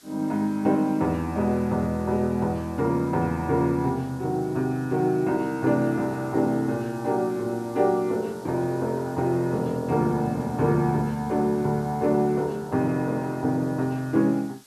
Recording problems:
hiss; slope 0 dB per octave, SNR 26 dB

